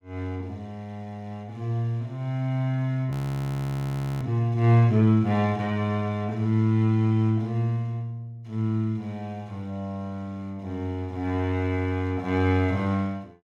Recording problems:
audio freezing; at 3 s for 1 s

